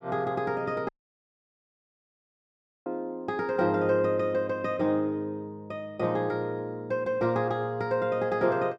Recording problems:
audio cutting out; at 1 s for 2 s

